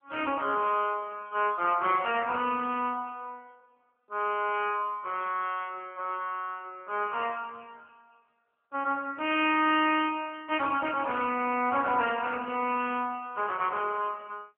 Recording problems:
telephone audio; 220 Hz to 3.2 kHz, AMR-NB

